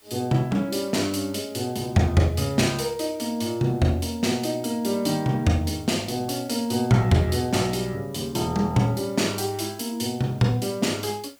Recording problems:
background hiss; slope -1 dB per octave, SNR 29 dB

